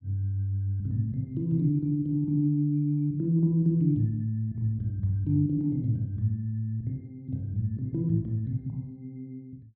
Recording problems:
low-pass filter; nothing above 5.5 kHz

